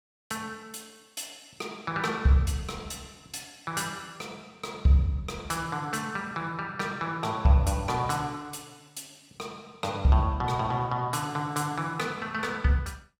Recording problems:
none

